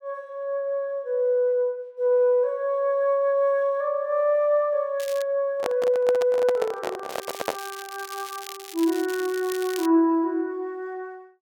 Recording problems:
crackling; at 5 s and from 7 to 10 s; loose cable, SNR 15 dB
microphone handling noise; from 5.5 to 7.5 s; peak +1 dB vs average level

